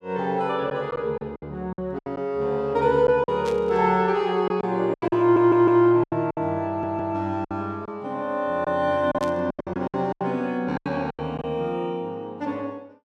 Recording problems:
packet loss; 10% of the sound replaced, filled with silence
static burst; at 3.5 s and at 9 s; peak -10 dB vs average level
stutter; at 5 s and at 6.5 s

